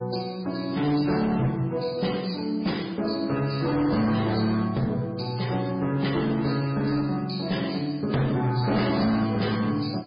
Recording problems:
lossy codec; MP3, then MP3, log-spectral distance 5 dB, nothing above 4.9 kHz
distorted audio; hard clipping, uneven, signal-to-distortion ratio 12 dB

